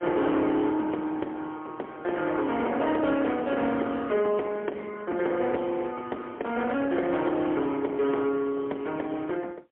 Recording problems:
phone line; 240 Hz to 2.8 kHz, AMR-NB, then MP3
distortion; soft clipping, signal-to-distortion ratio 13 dB

